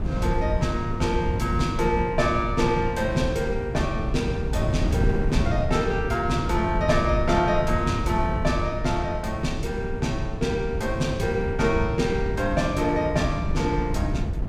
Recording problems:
wind noise; below 150 Hz, SNR 3 dB

